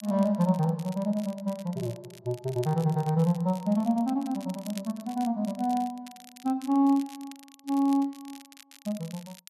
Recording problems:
crackling; vinyl, SNR 21 dB

